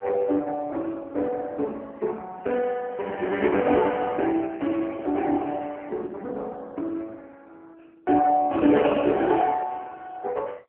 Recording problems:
telephone audio; 240 Hz to 3.1 kHz, AMR-NB

